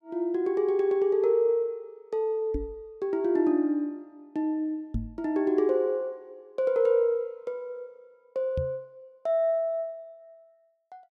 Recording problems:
knock on the microphone; at 2.5 s, at 5 s and at 8.5 s; peak 0 dB vs average level

